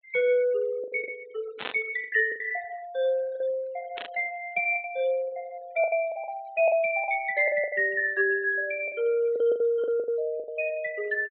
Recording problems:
low-pass filter; nothing above 4 kHz
denoising artefacts; signal-to-artefact ratio 23 dB
packet loss; 11% of the sound replaced, filled with the last packet
static burst; at 1.5 s and at 4 s; peak -2 dB vs average level

